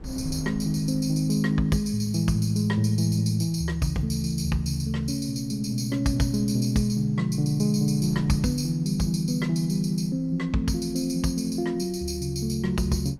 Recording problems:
wind on the microphone; below 200 Hz, SNR 22 dB

